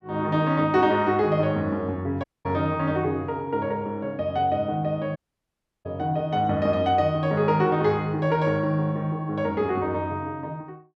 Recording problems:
dropout; at 2 s and at 5 s for 0.5 s

